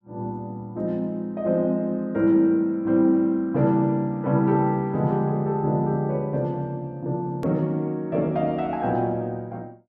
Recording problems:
hard cut with a click; at 7.5 s

